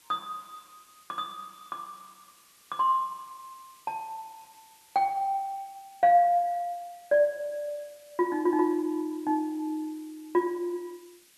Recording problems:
background hiss; slope +1 dB per octave, SNR 27 dB

